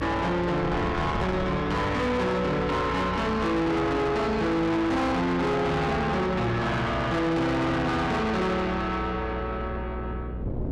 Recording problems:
distorted audio; soft clipping, signal-to-distortion ratio 7 dB
mains hum; 60 Hz, harmonics up to 600 Hz, SNR 11 dB
wind on the microphone; below 510 Hz, SNR 12 dB

